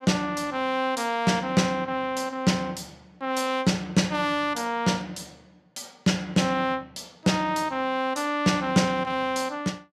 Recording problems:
none

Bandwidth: 14.5 kHz